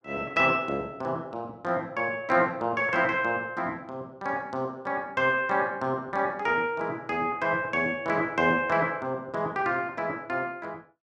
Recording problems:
none

